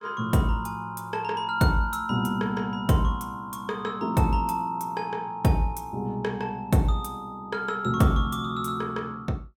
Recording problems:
none

